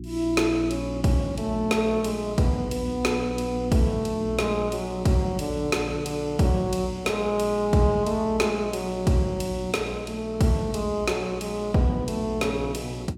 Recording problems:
mains hum; 60 Hz, harmonics up to 360 Hz, SNR 11 dB

